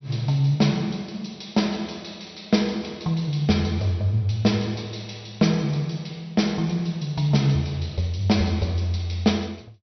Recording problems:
treble cut off; nothing above 5.9 kHz

